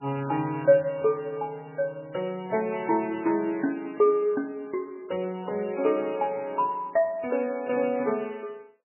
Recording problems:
lossy compression; MP3, log-spectral distance 3 dB, nothing above 2.5 kHz

